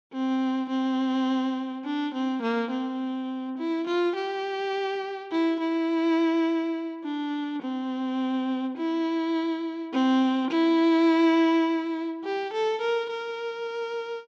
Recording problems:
none

